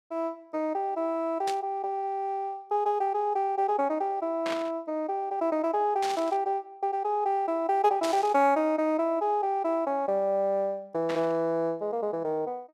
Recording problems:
static burst; 5 times, first at 1.5 s; peak -3 dB vs average level

